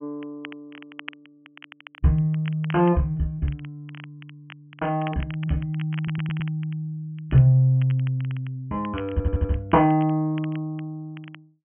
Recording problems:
treble missing; nothing above 3.2 kHz
crackling; vinyl, SNR 21 dB
audio stuttering; at 6 s and at 9 s

